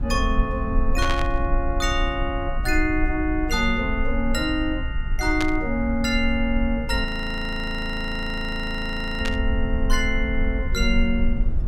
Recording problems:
rumble; below 54 Hz, strongest tone 20 Hz, SNR 4 dB
burst of static; at 1 s, at 5.5 s and at 9.5 s; peak +1 dB vs average level
audio freezing; at 7 s for 2 s

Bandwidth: 18 kHz